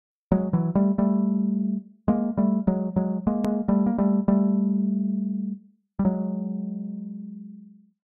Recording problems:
edit click; at 3.5 s

